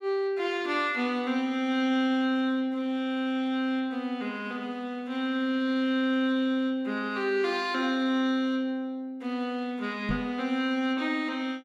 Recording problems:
microphone thump; at 10 s; peak 0 dB vs average level

